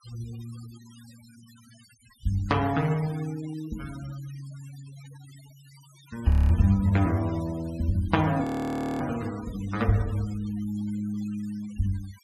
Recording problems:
denoising artefacts; signal-to-artefact ratio 20 dB
audio freezing; at 6.5 s and at 8.5 s for 0.5 s

